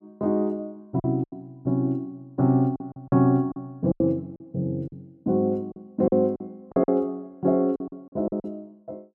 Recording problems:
packet loss; 10% of the sound replaced, filled with silence

